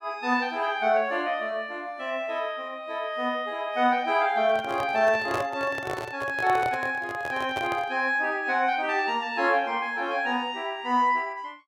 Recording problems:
microphone handling noise; from 4.5 to 8 s; peak -1 dB vs average level

